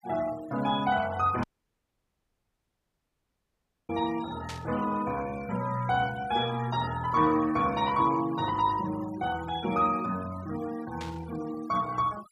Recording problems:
noise reduction artefacts; signal-to-artefact ratio 16 dB
static burst; at 1.5 s, at 4.5 s and at 11 s; peak -7 dB vs average level
dropout; at 1.5 s for 2.5 s

